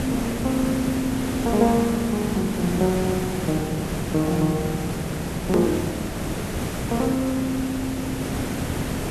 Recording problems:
hiss; slope -6 dB per octave, SNR 3 dB
edit click; at 5.5 s

